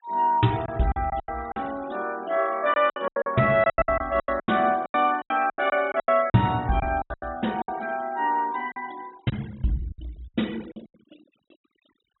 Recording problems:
treble missing; nothing above 3.9 kHz
noise reduction artefacts; signal-to-artefact ratio 24 dB
packet loss; 15% of the sound replaced, filled with silence

